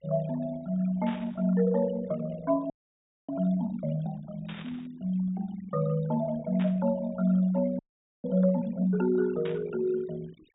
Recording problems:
low-pass filter; nothing above 4 kHz
noise reduction artefacts; signal-to-artefact ratio 18 dB
static burst; 4 times, first at 1 s; peak -9 dB vs average level
audio freezing; at 2.5 s for 0.5 s and at 8 s

